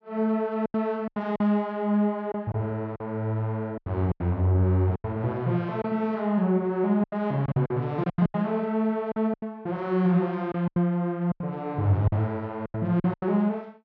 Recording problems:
lost packets; 11% of the sound replaced, filled with silence

